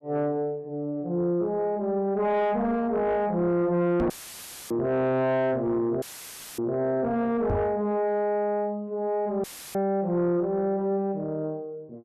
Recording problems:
distorted audio; soft clipping, signal-to-distortion ratio 11 dB
microphone bump; at 4 s and at 7.5 s; peak +4 dB vs average level
audio cutting out; at 4 s for 0.5 s, at 6 s for 0.5 s and at 9.5 s; filled with static

